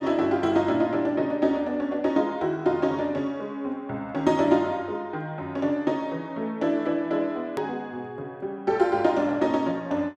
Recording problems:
edit click; at 7.5 s

